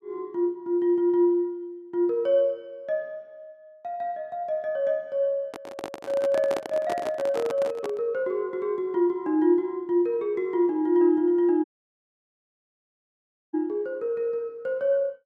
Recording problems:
microphone handling noise; from 5.5 to 8 s; peak -3 dB vs average level
dropout; at 12 s for 2 s

